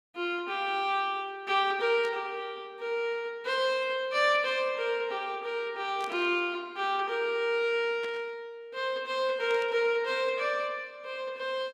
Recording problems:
burst of static; 4 times, first at 2 s; peak -10 dB vs average level

